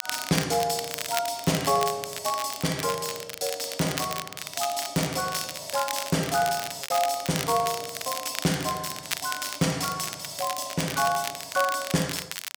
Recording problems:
crackling; vinyl, SNR 7 dB
lost packets; 0.6% of the sound replaced, filled with repeated pitch periods

